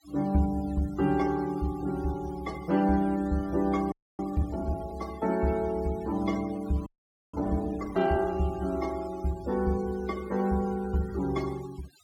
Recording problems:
denoising artefacts; signal-to-artefact ratio 21 dB
audio freezing; at 4 s and at 7 s

